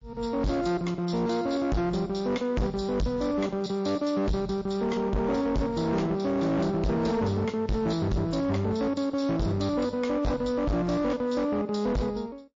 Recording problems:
codec artefacts; MP3, log-spectral distance 3 dB, nothing above 7.3 kHz
distorted audio; hard clipping, signal-to-distortion ratio 6 dB

